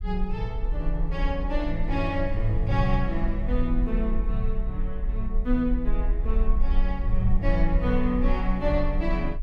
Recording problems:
low-frequency rumble; below 44 Hz, SNR 1 dB

